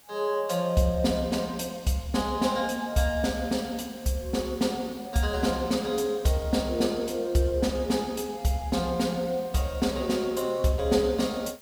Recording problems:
hiss; slope -1 dB per octave, SNR 24 dB

